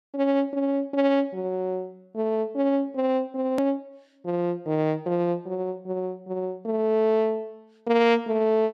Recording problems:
hard cut with a click; at 3.5 s

